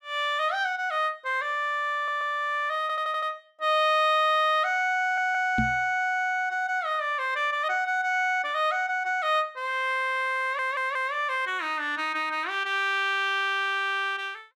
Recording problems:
stutter; 4 times, first at 2 s
microphone thump; at 5.5 s; peak +2 dB vs average level

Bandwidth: 14 kHz